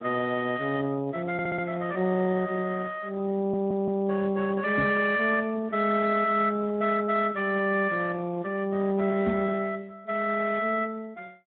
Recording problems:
treble missing; nothing above 4 kHz
lossy compression; Speex, log-spectral distance 4 dB
audio stuttering; at 1.5 s and at 3.5 s
knock on the microphone; at 5 s and at 9.5 s; peak +1 dB vs average level

